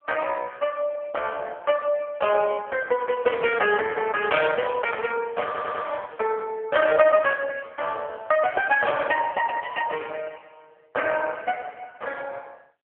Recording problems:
telephone audio; 370 Hz to 2.8 kHz, AMR-NB
stutter; at 5.5 s

